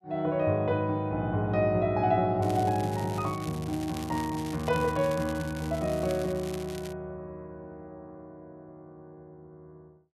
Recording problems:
crackling; from 2.5 to 7 s; loose cable, SNR 17 dB

